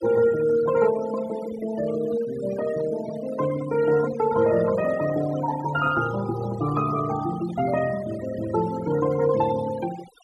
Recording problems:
denoising artefacts; signal-to-artefact ratio 14 dB

